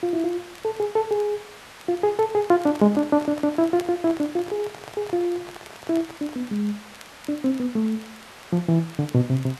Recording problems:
hiss; SNR 18 dB
crackle; vinyl, SNR 27 dB
handling noise; from 2.5 to 6.5 s; peak -10 dB vs average level

